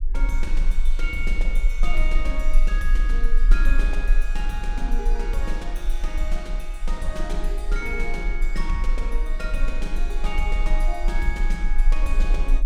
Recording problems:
rumble; below 34 Hz, strongest tone 18 Hz, SNR -6 dB

